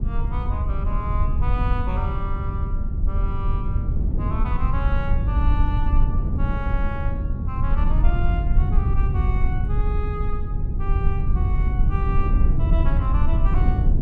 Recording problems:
low-frequency rumble; below 74 Hz, SNR -10 dB
wind noise; below 230 Hz, SNR 2 dB

